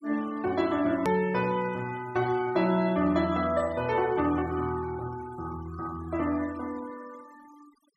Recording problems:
noise reduction artefacts; signal-to-artefact ratio 21 dB
hard cut with a click; at 1 s

